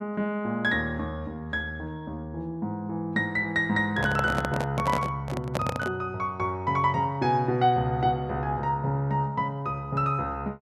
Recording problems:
handling noise; from 4 to 6 s; peak +3 dB vs average level

